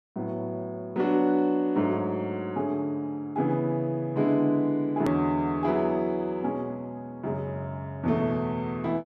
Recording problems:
edit click; at 5 s

